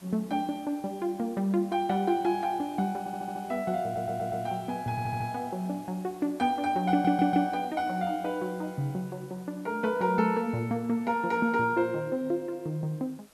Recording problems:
background hiss; slope -3 dB per octave, SNR 25 dB
stutter; 4 times, first at 3 s

